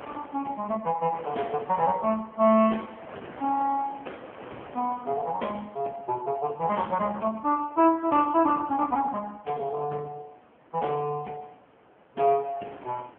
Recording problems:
phone line; 240 Hz to 3.3 kHz, AMR-NB
wind noise; below 1.2 kHz, SNR 21 dB

